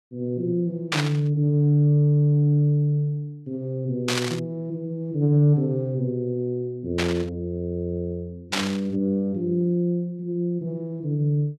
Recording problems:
static burst; 4 times, first at 1 s; peak +4 dB vs average level

